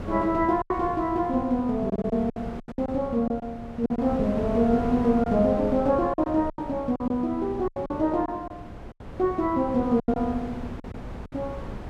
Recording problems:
wind noise; below 480 Hz, SNR 12 dB
lost packets; 9% of the sound replaced, filled with silence

